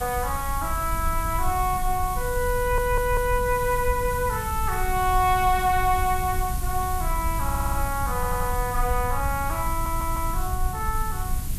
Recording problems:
background hiss; slope +1 dB per octave, SNR 11 dB
rumble; below 76 Hz, SNR 6 dB
audio stuttering; 4 times, first at 2.5 s

